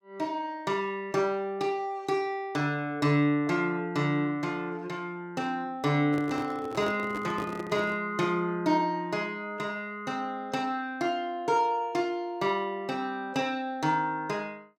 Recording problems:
handling noise; from 6 to 8 s; peak -3 dB vs average level

